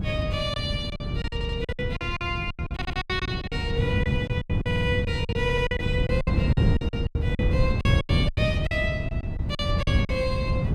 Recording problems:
wind on the microphone; below 170 Hz, SNR -3 dB
packet loss; 17% of the sound replaced, filled with silence
stutter; 4 times, first at 1.5 s

